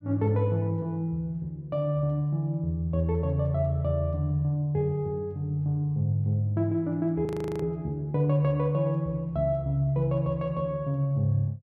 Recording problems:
frozen audio; at 7.5 s

